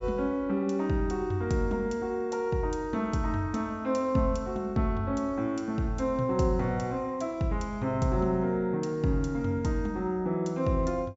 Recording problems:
treble cut off; nothing above 8 kHz

